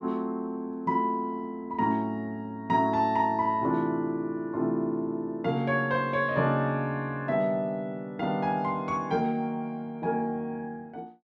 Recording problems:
none

